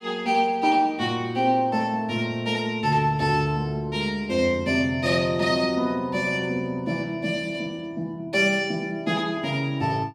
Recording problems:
none

